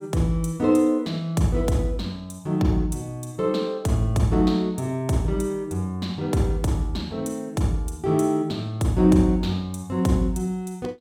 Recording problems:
none

